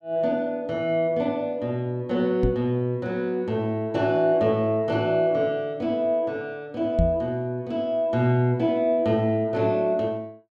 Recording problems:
knock on the microphone; at 2.5 s and at 7 s; peak +4 dB vs average level

